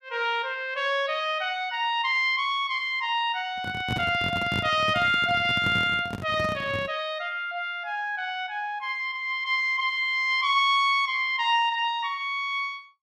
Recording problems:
microphone handling noise; from 3.5 to 7 s; peak -2 dB vs average level

